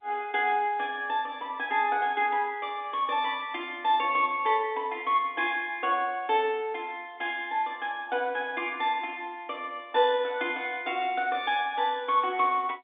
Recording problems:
telephone audio; 240 Hz to 3.6 kHz, G.711

